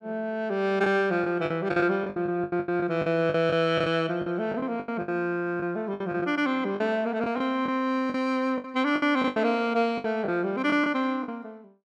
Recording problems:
lost packets; 12% of the sound replaced, filled with the last packet

